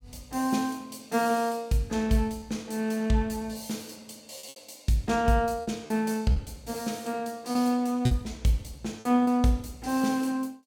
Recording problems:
packet loss; 4% of the sound replaced, filled with repeated pitch periods

